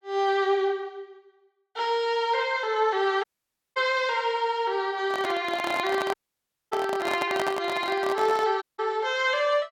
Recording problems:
audio cutting out; at 3 s for 0.5 s, at 6 s for 0.5 s and at 8.5 s
handling noise; from 5 to 8.5 s; peak +1 dB vs average level

